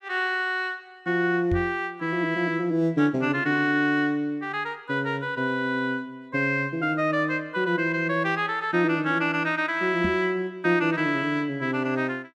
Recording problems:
knock on the microphone; at 1.5 s and at 10 s; peak 0 dB vs average level

